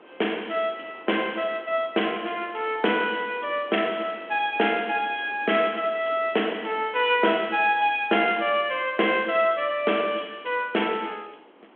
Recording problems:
phone line; 240 Hz to 3.4 kHz, G.726
hiss; SNR 24 dB

